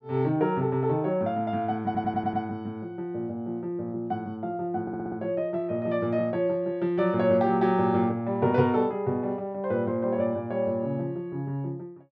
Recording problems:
stutter; at 2 s and at 5 s

